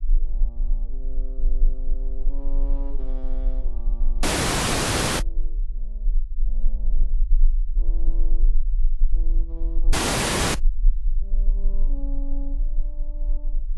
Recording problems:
codec artefacts; AAC, log-spectral distance 2 dB
low-frequency rumble; below 32 Hz, strongest tone 18 Hz, SNR -17 dB
audio cutting out; at 4 s for 1 s and at 10 s for 0.5 s

